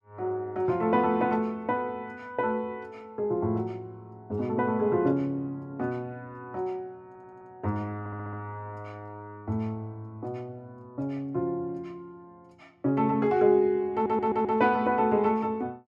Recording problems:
audio stuttering; at 7 s, at 8 s and at 14 s

